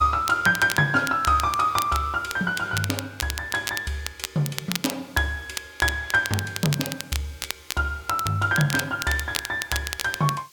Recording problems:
background hiss; slope +2 dB per octave, SNR 28 dB
crackle; vinyl, SNR 8 dB

